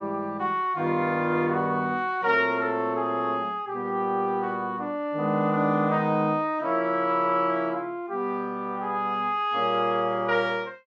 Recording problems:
none

